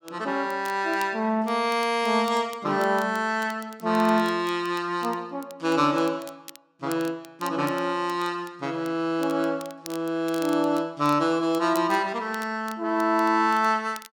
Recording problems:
crackling; vinyl, SNR 22 dB

